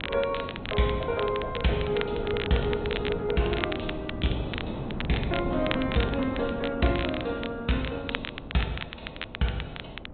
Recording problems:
low-pass filter; nothing above 3.9 kHz
lossy compression; AAC, log-spectral distance 3 dB
wind on the microphone; below 380 Hz, SNR 8 dB
crackle; vinyl, SNR 8 dB

